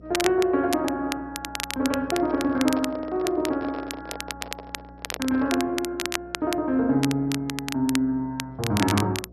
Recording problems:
lossy compression; MP2, log-spectral distance 2 dB
hum; 60 Hz, harmonics up to 720 Hz, SNR 23 dB
crackle; vinyl, SNR 8 dB
microphone handling noise; from 2 to 5.5 s; peak -7 dB vs average level

